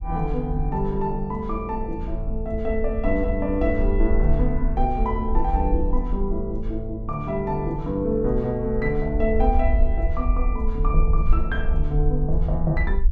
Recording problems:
rumble; below 52 Hz, SNR 2 dB

